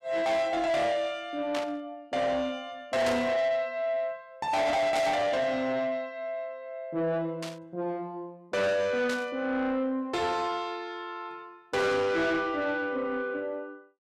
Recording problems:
distorted audio; soft clipping, signal-to-distortion ratio 8 dB
static burst; 5 times, first at 1.5 s; peak -3 dB vs average level

